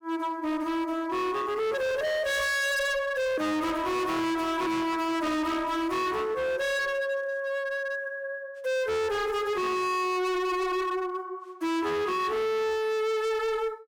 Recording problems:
distortion; hard clipping, signal-to-distortion ratio 6 dB

